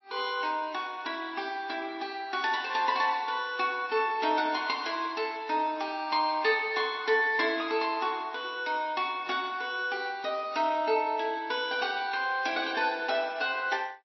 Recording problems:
codec artefacts; MP3, log-spectral distance 3 dB, nothing above 5.7 kHz

